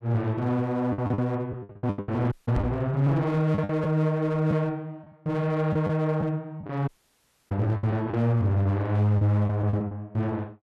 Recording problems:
distortion; hard clipping, uneven, signal-to-distortion ratio 11 dB
packet loss; 11% of the sound replaced, filled with the last packet
dropout; at 2.5 s and at 7 s for 0.5 s
microphone thump; at 2.5 s; peak +2 dB vs average level

